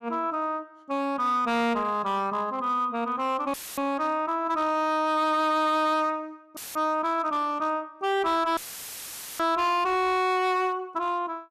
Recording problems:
distortion; hard clipping, signal-to-distortion ratio 11 dB
dropout; at 3.5 s, at 6.5 s and at 8.5 s for 1 s; filled with static

